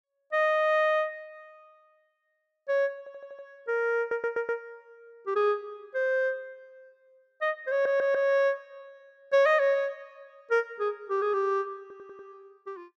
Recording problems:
audio stuttering; 4 times, first at 3 s

